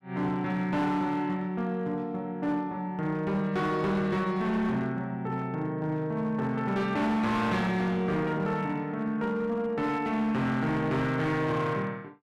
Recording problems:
distorted audio; hard clipping, signal-to-distortion ratio 11 dB

